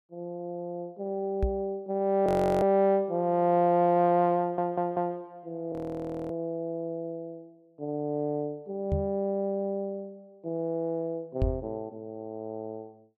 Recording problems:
knock on the microphone; at 1.5 s, at 9 s and at 11 s; peak +4 dB vs average level
audio freezing; at 2.5 s and at 5.5 s for 0.5 s
audio stuttering; at 4.5 s

